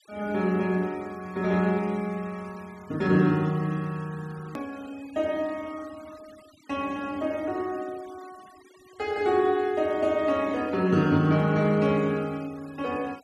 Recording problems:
noise reduction artefacts; signal-to-artefact ratio 25 dB
click at an edit; at 4.5 s

